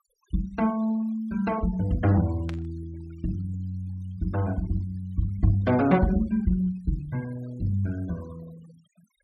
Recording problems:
noise reduction artefacts; signal-to-artefact ratio 23 dB
burst of static; at 2.5 s; peak -9 dB vs average level

